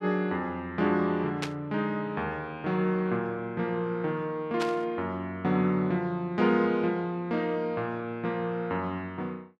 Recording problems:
static burst; at 1.5 s and at 4.5 s; peak 0 dB vs average level

